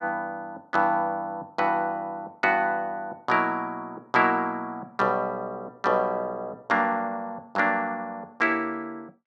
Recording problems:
none

